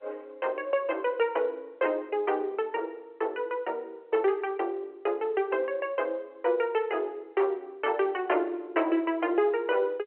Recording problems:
phone line; 300 Hz to 3.1 kHz, G.711

